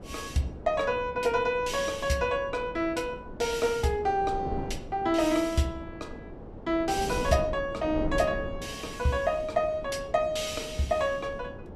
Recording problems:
wind noise; below 420 Hz, SNR 12 dB

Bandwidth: 15.5 kHz